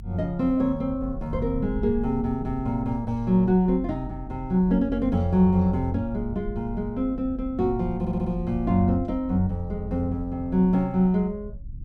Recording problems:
rumble; below 78 Hz, strongest tone 44 Hz, SNR 13 dB
stutter; at 8 s

